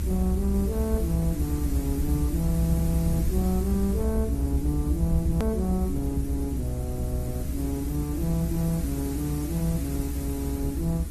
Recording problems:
lossy codec; Opus, log-spectral distance 5 dB, nothing above 13.1 kHz
hum; 60 Hz, harmonics up to 360 Hz, SNR 13 dB
background hiss; slope -1 dB per octave, SNR 13 dB
low-frequency rumble; below 76 Hz, SNR 1 dB
click at an edit; at 5.5 s

